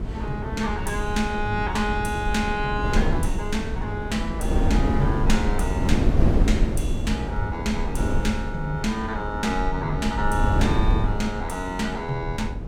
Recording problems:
rumble; below 92 Hz, SNR 10 dB
wind noise; below 180 Hz, SNR 0 dB

